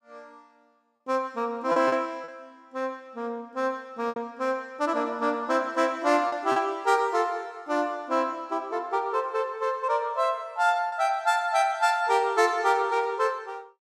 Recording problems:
lost packets; 3% of the sound replaced, filled with repeated pitch periods

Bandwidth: 14.5 kHz